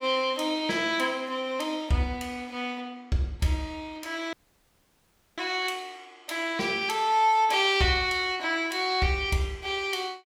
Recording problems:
audio cutting out; at 4.5 s for 1 s

